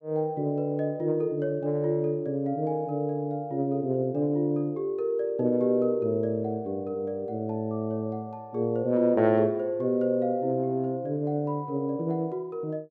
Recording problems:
none

